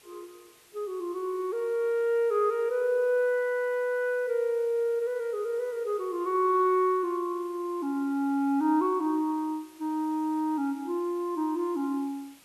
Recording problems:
hiss; slope -1 dB per octave, SNR 27 dB

